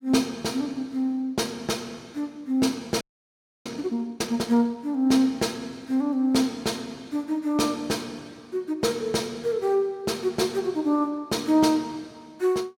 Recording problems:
audio freezing; at 3 s for 0.5 s

